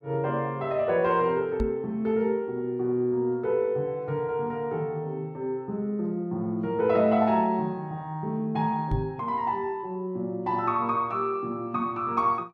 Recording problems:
microphone thump; at 1.5 s and at 9 s; peak +2 dB vs average level

